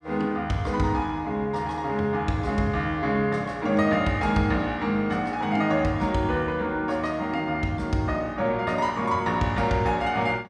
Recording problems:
none

